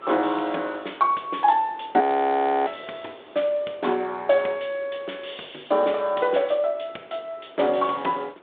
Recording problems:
telephone audio; 280 Hz to 3.6 kHz, G.726
wind noise; below 1.3 kHz, SNR 23 dB
audio freezing; at 2 s for 0.5 s

